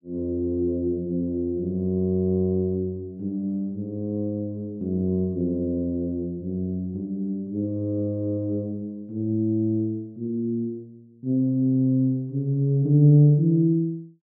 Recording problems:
none

